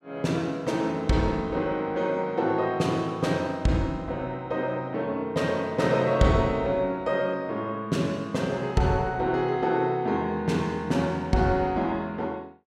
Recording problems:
none

